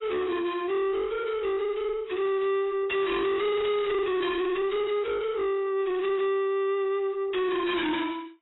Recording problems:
lossy compression; AAC, log-spectral distance 2 dB, nothing above 3.9 kHz
distorted audio; soft clipping, signal-to-distortion ratio 5 dB

